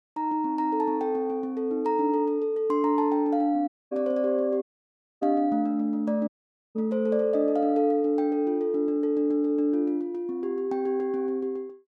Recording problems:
audio cutting out; at 3.5 s, at 4.5 s for 0.5 s and at 6.5 s

